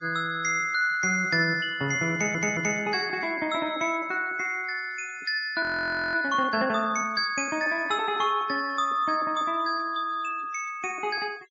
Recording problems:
treble missing; nothing above 8 kHz
noise reduction artefacts; signal-to-artefact ratio 26 dB
audio stuttering; at 2 s
frozen audio; at 5.5 s for 0.5 s

